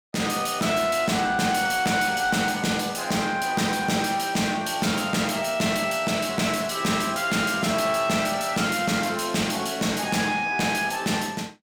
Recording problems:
distorted audio; soft clipping, signal-to-distortion ratio 11 dB

